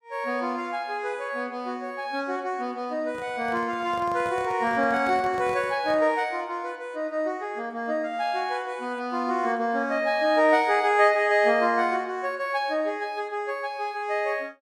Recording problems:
handling noise; from 3 to 6 s; peak -10 dB vs average level

